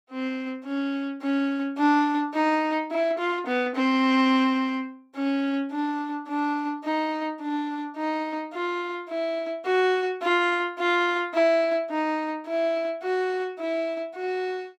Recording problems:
none

